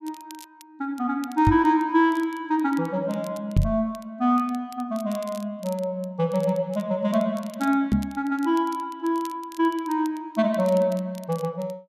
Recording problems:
crackle; vinyl, SNR 24 dB
knock on the microphone; at 1.5 s, at 3.5 s and at 8 s; peak +7 dB vs average level

